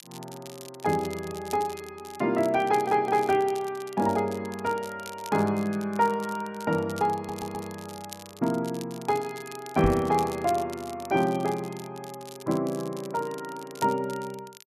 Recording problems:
crackling; vinyl, SNR 18 dB
stutter; at 2.5 s and at 7 s
microphone bump; at 10 s; peak +2 dB vs average level

